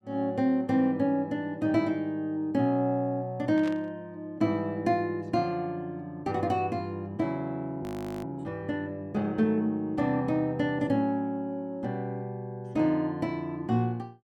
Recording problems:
burst of static; at 3.5 s; peak -10 dB vs average level
frozen audio; at 8 s

